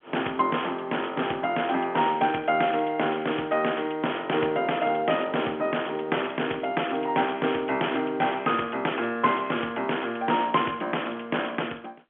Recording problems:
phone line; 220 Hz to 3.3 kHz, G.711

